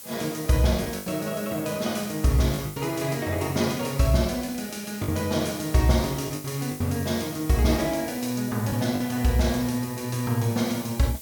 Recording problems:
background hiss; SNR 14 dB
packet loss; 5% of the sound replaced, filled with the last packet

